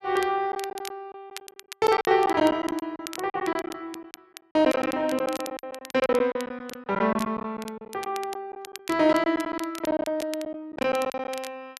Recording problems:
crackle; vinyl, SNR 16 dB
lost packets; 14% of the sound replaced, filled with silence

